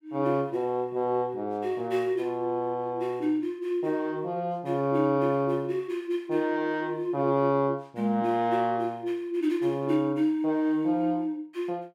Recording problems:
none

